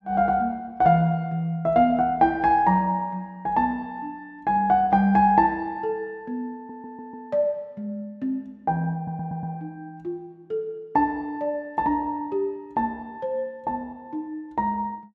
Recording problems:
audio stuttering; at 6.5 s and at 9 s

